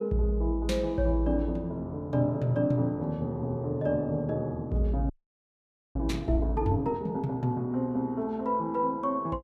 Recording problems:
frozen audio; at 5 s for 1 s

